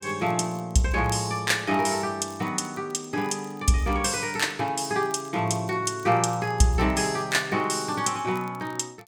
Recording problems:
crackling; vinyl, SNR 27 dB

